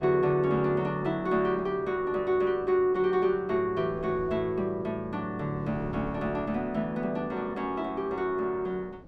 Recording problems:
wind on the microphone; below 380 Hz, SNR 19 dB

